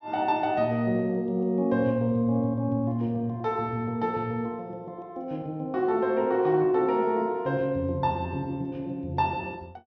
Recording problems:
treble missing; nothing above 6.2 kHz

